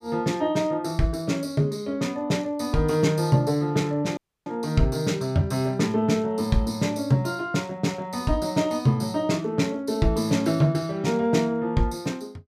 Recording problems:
dropout; at 4 s

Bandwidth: 15 kHz